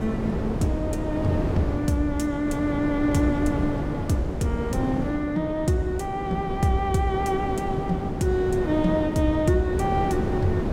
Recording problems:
wind noise; below 400 Hz, SNR 4 dB

